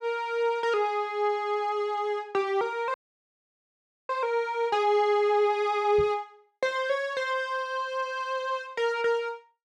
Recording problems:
frozen audio; at 3 s for 1 s
knock on the microphone; at 6 s; peak -7 dB vs average level

